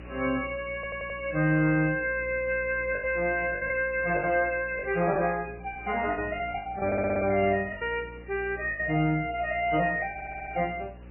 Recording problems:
lossy codec; MP3, log-spectral distance 5 dB, nothing above 2.7 kHz
hum; 60 Hz, harmonics up to 540 Hz, SNR 18 dB
background hiss; SNR 26 dB
packet loss; 7% of the sound replaced, filled with the last packet
audio stuttering; at 1 s, at 7 s and at 10 s

